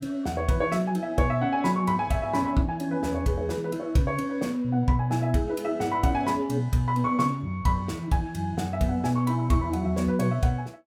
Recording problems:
none

